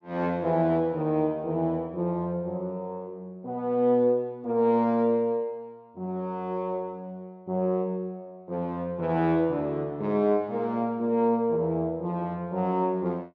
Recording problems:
none

